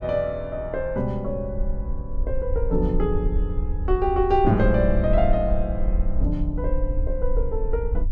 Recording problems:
rumble; below 54 Hz, SNR 3 dB

